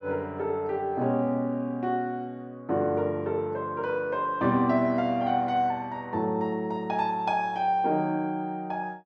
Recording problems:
none

